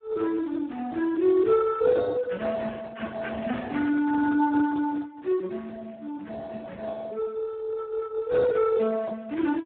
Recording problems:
telephone audio; 260 Hz to 2 kHz, Speex

